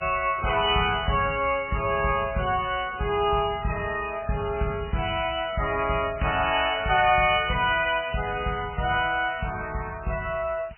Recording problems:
lossy compression; MP3, log-spectral distance 18 dB, nothing above 2.4 kHz
background hiss; SNR 28 dB
crackle; at 3.5 s, from 5 to 6.5 s and from 7 to 9.5 s; loose cable, SNR 28 dB

